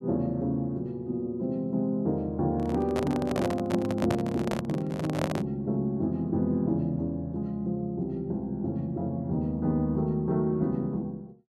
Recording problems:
microphone handling noise; from 2.5 to 5.5 s; peak +2 dB vs average level

